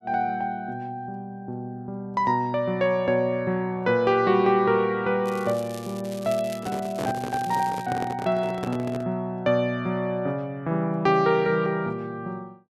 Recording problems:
crackling; from 5.5 to 8 s; loose cable, SNR 19 dB
handling noise; from 6.5 to 9 s; peak -3 dB vs average level

